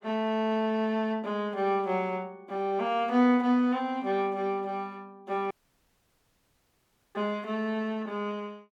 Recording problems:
audio cutting out; at 5.5 s for 1.5 s

